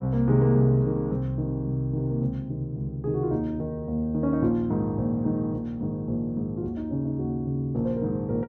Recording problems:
none

